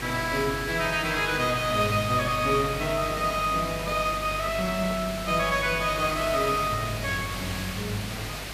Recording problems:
hum; 50 Hz, harmonics up to 400 Hz, SNR 14 dB
background hiss; slope -2 dB per octave, SNR 8 dB
handling noise; from 2.5 to 5 s; peak -10 dB vs average level

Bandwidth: 14.5 kHz